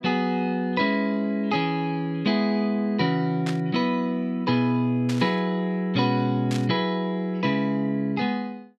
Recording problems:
static burst; at 3.5 s, at 5 s and at 6.5 s; peak -6 dB vs average level

